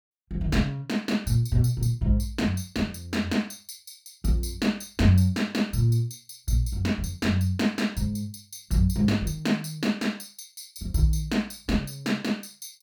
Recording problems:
none

